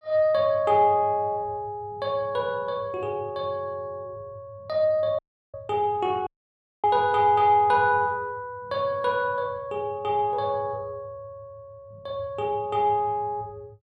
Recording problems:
dropout; at 5 s and at 6.5 s for 0.5 s

